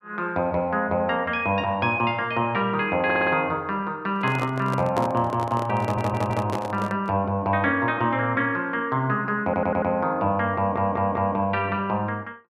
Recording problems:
stutter; 4 times, first at 3 s
microphone handling noise; from 4 to 7 s; peak -1 dB vs average level

